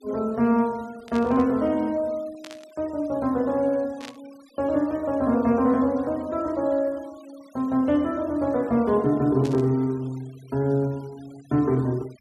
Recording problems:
noise reduction artefacts; signal-to-artefact ratio 27 dB
static burst; 4 times, first at 1 s; peak -11 dB vs average level

